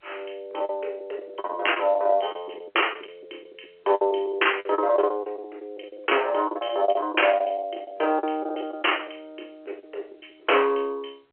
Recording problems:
telephone audio; 320 Hz to 3.2 kHz, G.711
packet loss; 14% of the sound replaced, filled with the last packet

